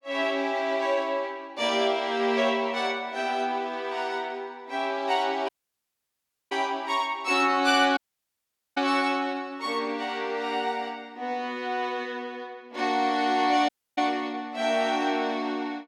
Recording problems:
audio cutting out; at 5.5 s for 1 s, at 8 s for 1 s and at 14 s

